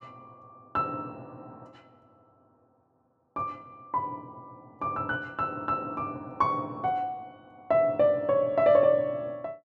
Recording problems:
none

